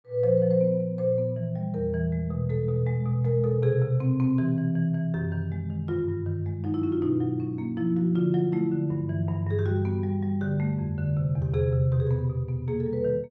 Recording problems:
none

